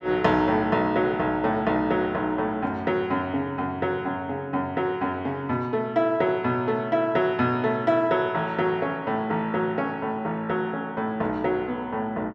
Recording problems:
none

